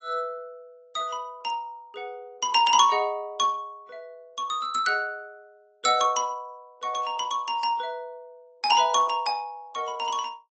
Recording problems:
lossy codec; AAC, log-spectral distance 2 dB, nothing above 7.3 kHz

